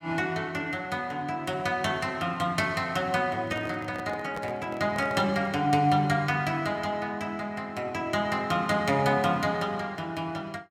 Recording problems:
microphone handling noise; from 3.5 to 5.5 s; peak -6 dB vs average level

